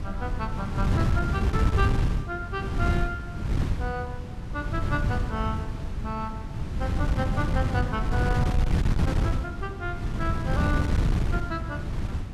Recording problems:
wind on the microphone; below 160 Hz, SNR -5 dB

